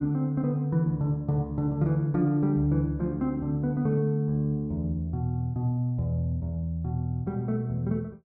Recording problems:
none

